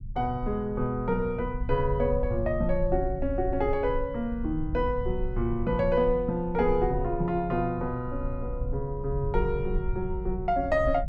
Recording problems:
rumble; below 68 Hz, SNR 7 dB

